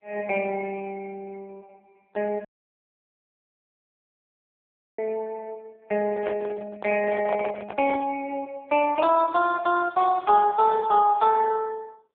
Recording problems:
phone line; 320 Hz to 3.1 kHz, AMR-NB
audio cutting out; at 2.5 s for 2.5 s
handling noise; from 6 to 8 s; peak -6 dB vs average level

